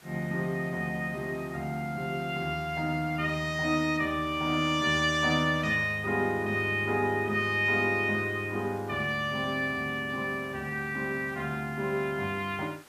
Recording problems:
hiss; SNR 24 dB

